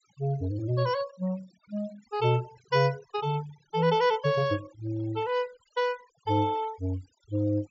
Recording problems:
low-pass filter; nothing above 8 kHz
denoising artefacts; signal-to-artefact ratio 22 dB

